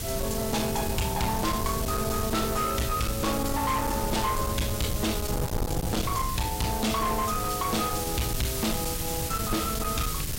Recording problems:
distorted audio; hard clipping, signal-to-distortion ratio 8 dB
hiss; slope +1 dB per octave, SNR 5 dB
wind on the microphone; below 210 Hz, SNR 5 dB

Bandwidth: 16 kHz